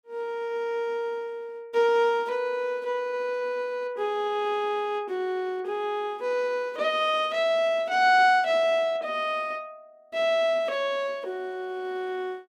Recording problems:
none

